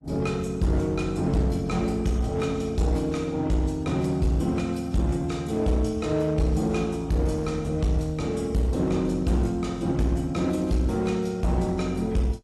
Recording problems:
lossy compression; AAC, log-spectral distance 2 dB
distorted audio; hard clipping, uneven, signal-to-distortion ratio 11 dB

